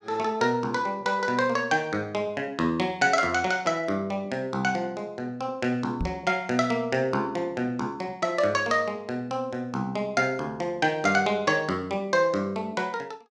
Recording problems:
knock on the microphone; at 6 s; peak -1 dB vs average level

